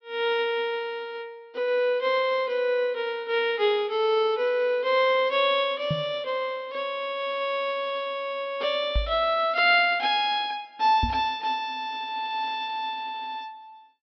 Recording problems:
treble cut off; nothing above 5.5 kHz
knock on the microphone; at 6 s, at 9 s and at 11 s; peak +2 dB vs average level

